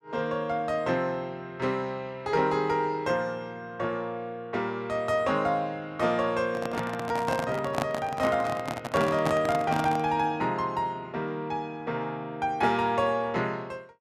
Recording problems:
handling noise; from 6.5 to 10 s; peak +3 dB vs average level

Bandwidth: 14 kHz